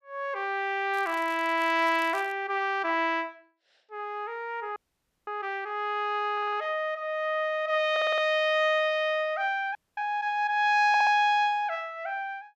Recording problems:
crackle; from 1 to 2.5 s; loose cable, SNR 24 dB
audio freezing; at 5 s for 0.5 s and at 10 s
stutter; at 6.5 s, at 8 s and at 11 s

